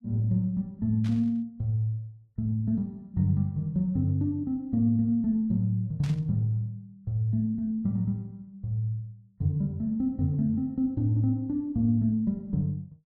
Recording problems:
burst of static; at 1 s and at 6 s; peak -13 dB vs average level

